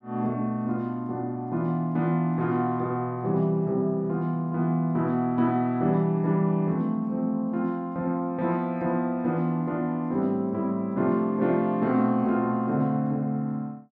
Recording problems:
none

